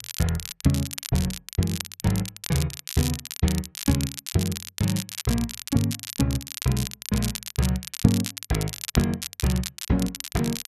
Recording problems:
crackle; vinyl, SNR 7 dB

